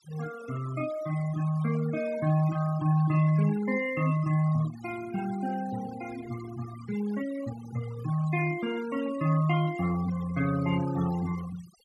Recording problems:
noise reduction artefacts; signal-to-artefact ratio 16 dB

